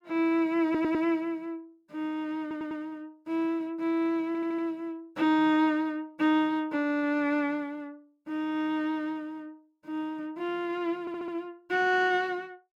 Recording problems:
audio stuttering; 4 times, first at 0.5 s

